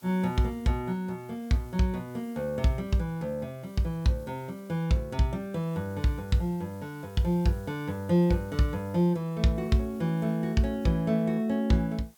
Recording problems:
hiss; slope -1 dB per octave, SNR 28 dB

